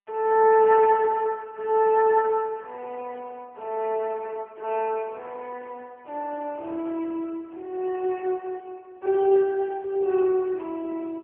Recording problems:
phone line; 340 Hz to 3.5 kHz, AMR-NB

